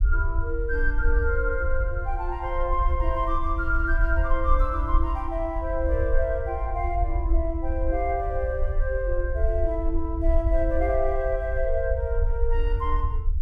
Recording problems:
rumble; below 60 Hz, SNR 0 dB

